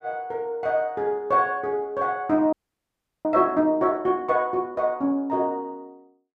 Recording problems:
frozen audio; at 2.5 s for 0.5 s

